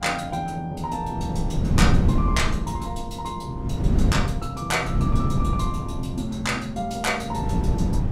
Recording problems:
wind on the microphone; below 180 Hz, SNR -3 dB

